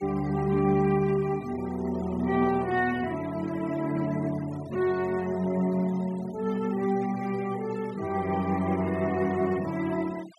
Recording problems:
denoising artefacts; signal-to-artefact ratio 21 dB

